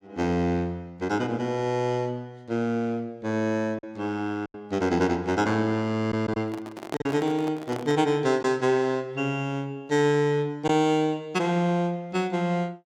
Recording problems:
lost packets; 1.9% of the sound replaced, filled with silence
microphone handling noise; from 6.5 to 8 s; peak -2 dB vs average level

